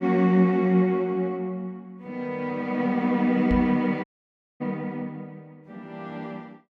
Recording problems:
knock on the microphone; at 3.5 s; peak -1 dB vs average level
audio cutting out; at 4 s for 0.5 s

